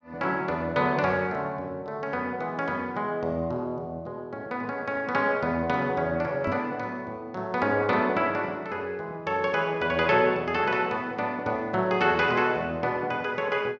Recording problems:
microphone bump; at 6.5 s; peak -1 dB vs average level

